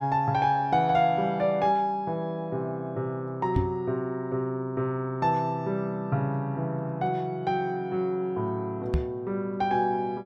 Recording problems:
knock on the microphone; at 3.5 s and at 9 s; peak +5 dB vs average level

